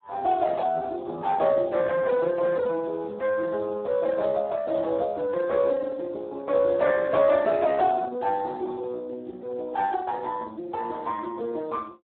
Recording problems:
telephone audio; 280 Hz to 3.6 kHz, Speex

